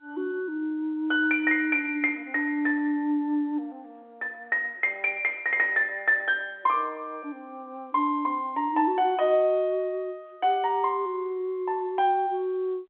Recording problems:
phone line; 260 Hz to 3.5 kHz, G.711

